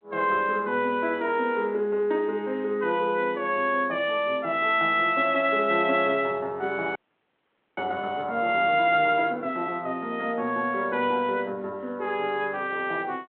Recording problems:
telephone audio; 170 Hz to 3.5 kHz, G.726
audio freezing; at 7 s for 1 s

